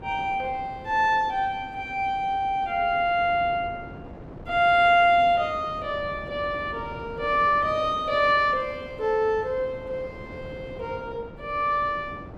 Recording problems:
wind noise; below 490 Hz, SNR 18 dB

